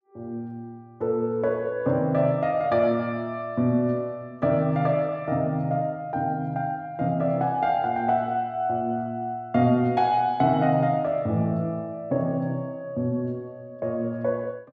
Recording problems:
none

